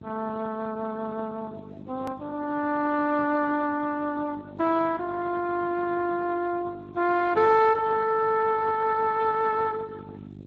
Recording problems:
codec artefacts; Speex, log-spectral distance 3 dB
hum; 50 Hz, harmonics up to 500 Hz, SNR 19 dB
edit click; at 2 s

